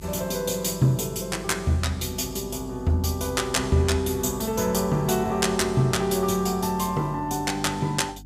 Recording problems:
electrical hum; 50 Hz, harmonics up to 300 Hz, SNR 18 dB

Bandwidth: 15.5 kHz